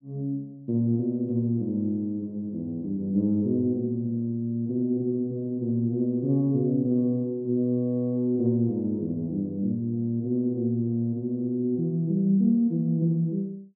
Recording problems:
none

